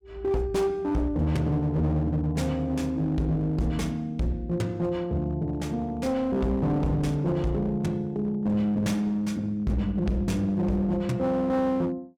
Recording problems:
distortion; hard clipping, uneven, signal-to-distortion ratio 9 dB

